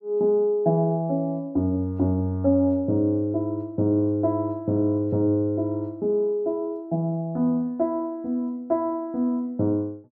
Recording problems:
none

